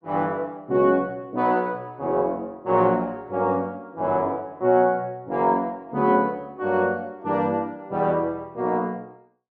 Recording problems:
none

